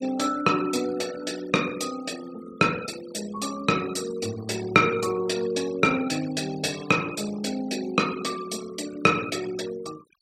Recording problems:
noise reduction artefacts; signal-to-artefact ratio 15 dB

